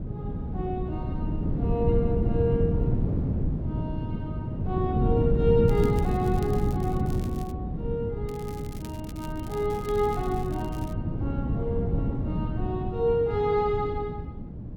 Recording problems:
wind noise; below 210 Hz, SNR 0 dB
crackle; from 5.5 to 7.5 s and from 8.5 to 11 s; loose cable, SNR 20 dB

